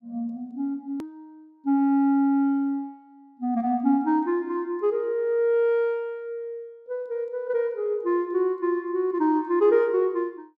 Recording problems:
edit click; at 1 s

